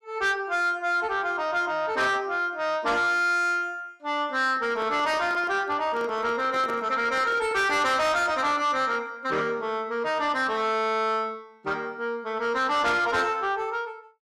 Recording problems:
distortion; soft clipping, signal-to-distortion ratio 11 dB
microphone handling noise; from 4.5 to 8 s; peak -7 dB vs average level

